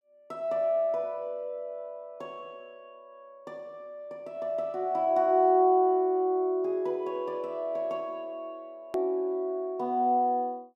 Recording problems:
hard cut with a click; at 9 s

